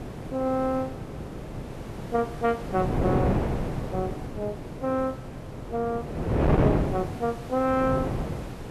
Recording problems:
background hiss; slope -4 dB per octave, SNR 18 dB
wind noise; below 480 Hz, SNR 1 dB

